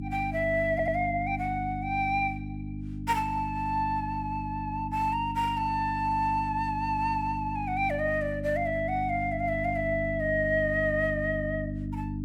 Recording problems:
hum; 50 Hz, harmonics up to 300 Hz, SNR 7 dB
audio stuttering; at 0.5 s

